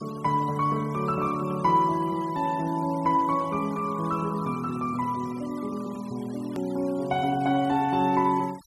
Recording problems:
noise reduction artefacts; signal-to-artefact ratio 22 dB
hard cut with a click; at 6.5 s

